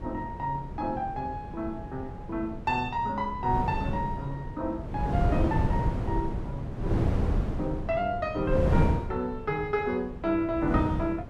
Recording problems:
wind on the microphone; below 220 Hz, SNR 1 dB

